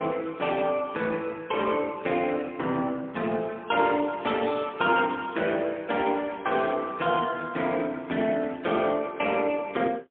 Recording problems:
telephone audio; 190 Hz to 3.5 kHz, AMR-NB, then MP3

